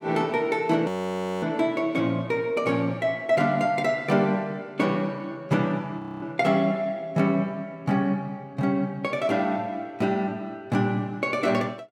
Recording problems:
frozen audio; at 1 s for 0.5 s and at 6 s

